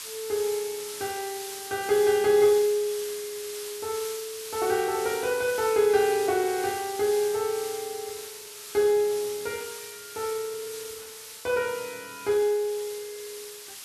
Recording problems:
background hiss; slope +3 dB per octave, SNR 11 dB

